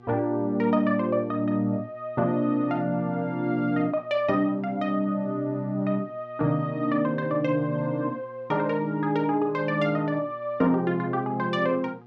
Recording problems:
mains hum; 60 Hz, harmonics up to 1.7 kHz, SNR 25 dB

